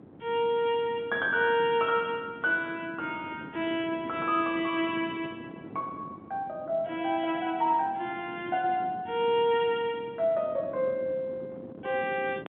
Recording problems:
phone line; 240 Hz to 3.6 kHz, G.711
wind noise; below 410 Hz, SNR 17 dB

